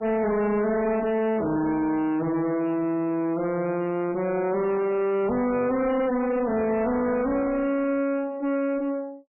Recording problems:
lossy codec; MP3, log-spectral distance 2 dB, nothing above 2.4 kHz
distorted audio; soft clipping, signal-to-distortion ratio 6 dB

